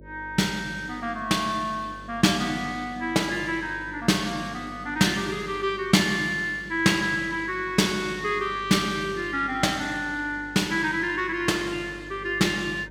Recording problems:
hum; 50 Hz, harmonics up to 600 Hz, SNR 21 dB

